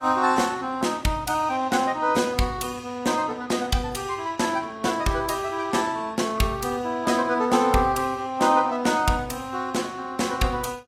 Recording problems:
lossy codec; AAC, log-spectral distance 3 dB, nothing above 14.7 kHz

